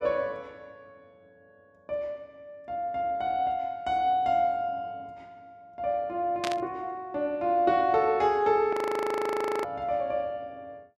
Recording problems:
static burst; at 6.5 s; peak -1 dB vs average level
frozen audio; at 8.5 s for 1 s

